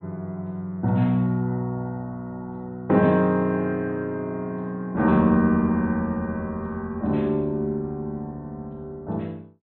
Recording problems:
low-pass filter; nothing above 4 kHz

